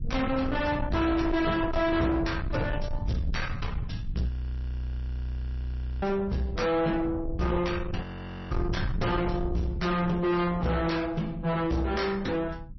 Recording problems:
lossy compression; MP3, log-spectral distance 2 dB, nothing above 5.8 kHz
distorted audio; soft clipping, signal-to-distortion ratio 8 dB
low-frequency rumble; below 170 Hz, SNR 7 dB
frozen audio; at 4.5 s for 1.5 s and at 8 s

